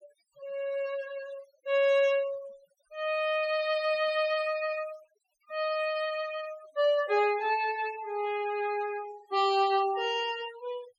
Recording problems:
noise reduction artefacts; signal-to-artefact ratio 18 dB

